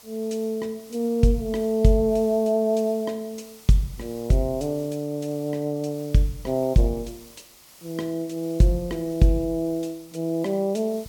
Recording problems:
background hiss; SNR 23 dB

